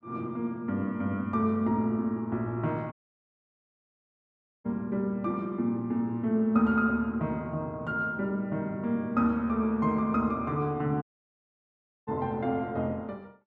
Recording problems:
audio cutting out; at 3 s for 1.5 s and at 11 s for 1 s

